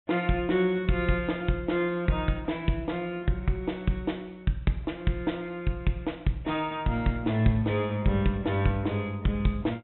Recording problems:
low-pass filter; nothing above 3.9 kHz

